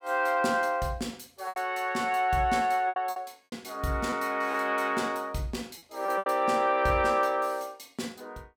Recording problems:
packet loss; 6% of the sound replaced, filled with repeated pitch periods

